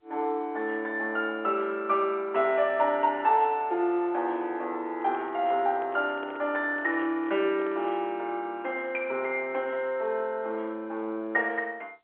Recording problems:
telephone audio; 340 Hz to 3.6 kHz, G.711
handling noise; from 5 to 8 s; peak -10 dB vs average level

